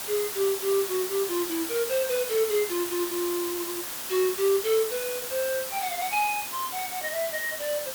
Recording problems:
hiss; slope 0 dB per octave, SNR 4 dB

